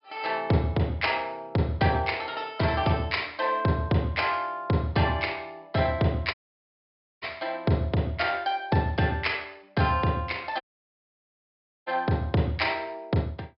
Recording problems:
treble missing; nothing above 5.2 kHz
audio cutting out; at 6.5 s for 1 s and at 11 s for 1.5 s

